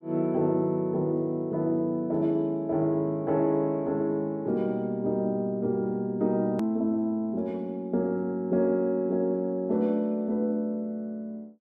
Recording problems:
click at an edit; at 6.5 s

